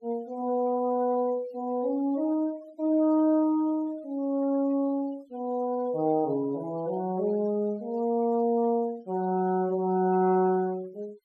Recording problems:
noise reduction artefacts; signal-to-artefact ratio 26 dB

